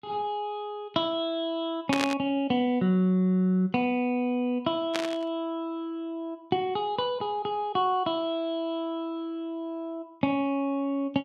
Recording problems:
static burst; at 2 s and at 5 s; peak +4 dB vs average level

